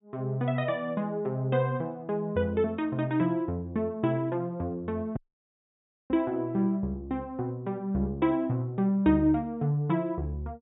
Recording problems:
treble cut off; nothing above 4 kHz
audio cutting out; at 5 s for 1 s

